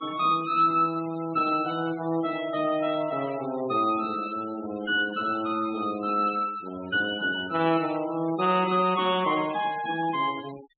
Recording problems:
low-pass filter; nothing above 4 kHz
denoising artefacts; signal-to-artefact ratio 19 dB

